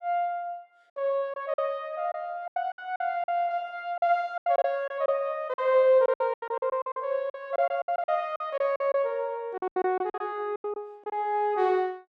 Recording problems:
lost packets; 13% of the sound replaced, filled with silence

